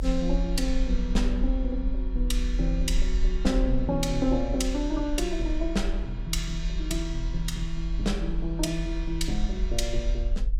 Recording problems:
rumble; below 42 Hz, strongest tone 40 Hz, SNR 1 dB

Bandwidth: 16 kHz